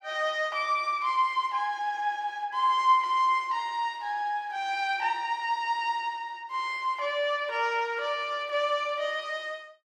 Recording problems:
none

